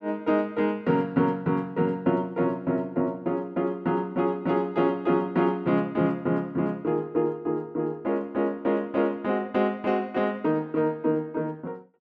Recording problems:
none

